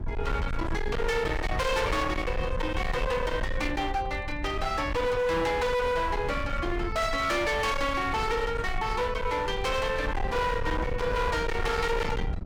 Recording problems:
distorted audio; hard clipping, signal-to-distortion ratio 7 dB
rumble; below 460 Hz, SNR 6 dB

